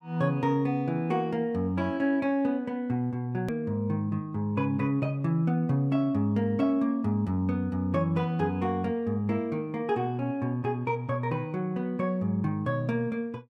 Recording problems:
hard cut with a click; at 3.5 s

